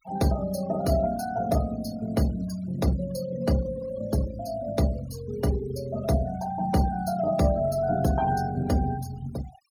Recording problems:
denoising artefacts; signal-to-artefact ratio 18 dB

